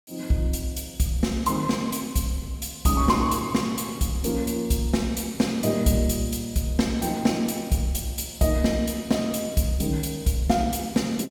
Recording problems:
none

